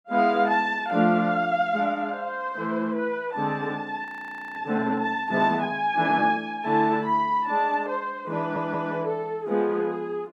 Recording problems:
frozen audio; at 4 s for 0.5 s
audio stuttering; at 8.5 s

